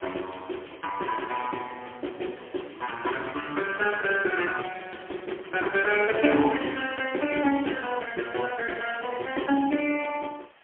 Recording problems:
phone line; 240 Hz to 3.2 kHz, AMR-NB, then MP3
hiss; SNR 27 dB

